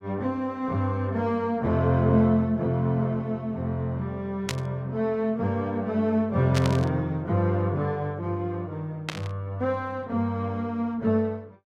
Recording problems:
static burst; at 4.5 s, at 6.5 s and at 9 s; peak +1 dB vs average level

